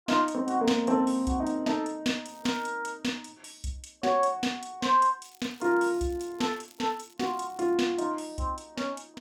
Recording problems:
crackle; at 2.5 s and from 5 to 7.5 s; loose cable, SNR 28 dB

